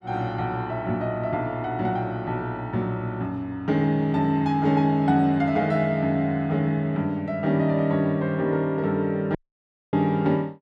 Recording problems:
audio cutting out; at 9.5 s for 0.5 s

